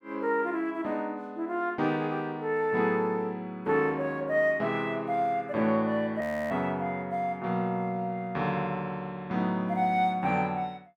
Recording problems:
frozen audio; at 6 s

